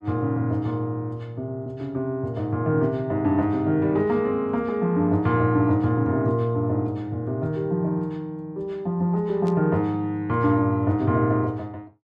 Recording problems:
static burst; at 9.5 s; peak -17 dB vs average level

